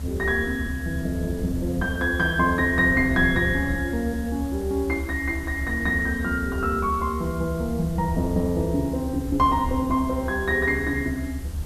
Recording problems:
background hiss; slope -2 dB per octave, SNR 21 dB
rumble; below 78 Hz, SNR 8 dB

